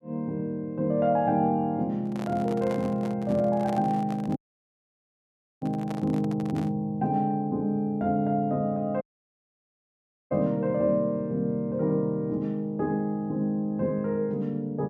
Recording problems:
microphone handling noise; from 2 to 7 s; peak -7 dB vs average level
dropout; at 4.5 s for 1.5 s and at 9 s for 1.5 s

